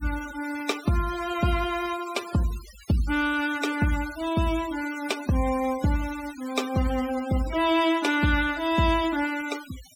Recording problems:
noise reduction artefacts; signal-to-artefact ratio 15 dB

